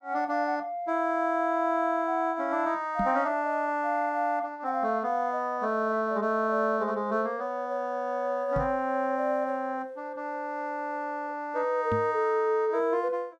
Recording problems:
microphone thump; at 3 s, at 8.5 s and at 12 s; peak -1 dB vs average level

